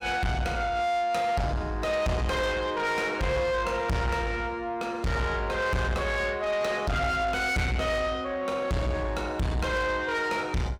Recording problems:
distortion; soft clipping, signal-to-distortion ratio 6 dB

